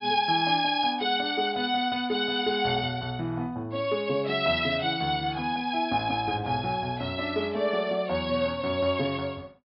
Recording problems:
low-pass filter; nothing above 5.5 kHz

